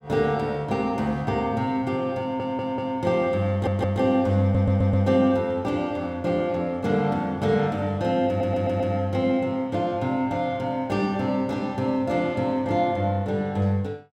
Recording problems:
audio stuttering; 4 times, first at 2 s

